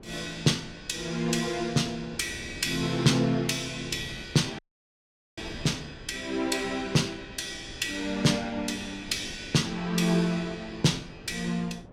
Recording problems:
wind on the microphone; below 410 Hz, SNR 18 dB
audio cutting out; at 4.5 s for 1 s

